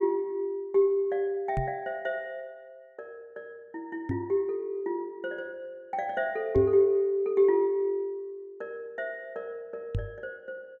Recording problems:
knock on the microphone; 4 times, first at 1.5 s; peak +3 dB vs average level

